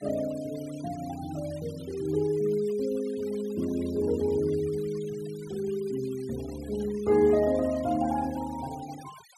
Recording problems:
noise reduction artefacts; signal-to-artefact ratio 21 dB

